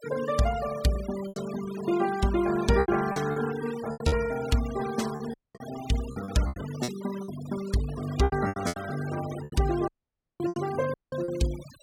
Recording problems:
denoising artefacts; signal-to-artefact ratio 13 dB
packet loss; 10% of the sound replaced, filled with repeated pitch periods
audio cutting out; at 5.5 s, at 10 s for 0.5 s and at 11 s

